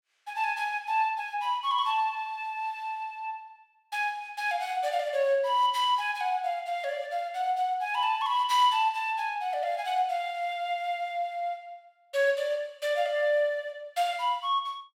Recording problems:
none

